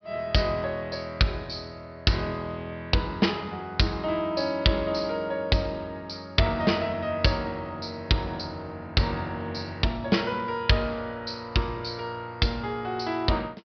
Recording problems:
treble missing; nothing above 5.5 kHz

